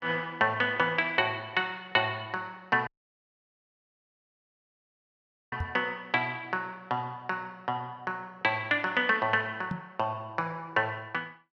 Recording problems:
dropout; at 3 s for 2.5 s
knock on the microphone; at 5.5 s and at 9.5 s; peak -1 dB vs average level

